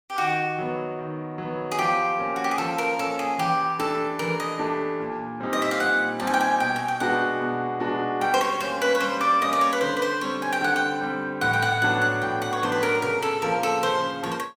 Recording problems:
none

